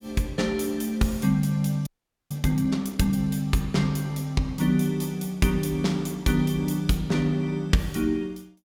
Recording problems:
frozen audio; at 2 s

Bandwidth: 17 kHz